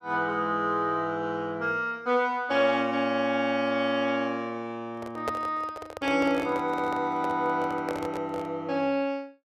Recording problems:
microphone handling noise; from 5 to 8.5 s; peak 0 dB vs average level

